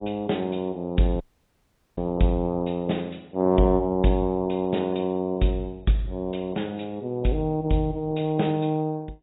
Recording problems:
lossy codec; AAC, log-spectral distance 4 dB, nothing above 3.8 kHz
audio cutting out; at 1 s for 1 s

